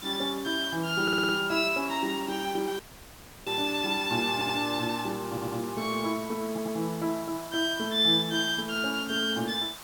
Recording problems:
hiss; SNR 15 dB
stutter; 4 times, first at 1 s
dropout; at 3 s for 0.5 s

